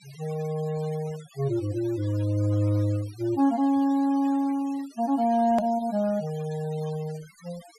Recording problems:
denoising artefacts; signal-to-artefact ratio 22 dB
edit click; at 5.5 s

